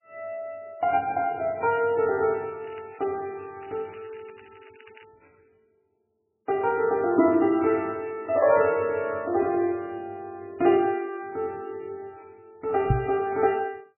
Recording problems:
lossy codec; MP3, log-spectral distance 4 dB, nothing above 2.4 kHz
crackle; at 1.5 s, from 2.5 to 4.5 s and at 4.5 s; loose cable, SNR 28 dB
microphone thump; at 13 s; peak +7 dB vs average level

